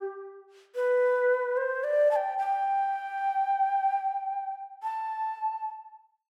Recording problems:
none

